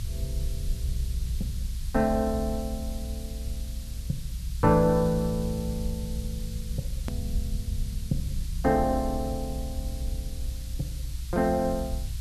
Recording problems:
background hiss; slope +4 dB per octave, SNR 17 dB
rumble; below 70 Hz, SNR 6 dB
edit click; at 7 s

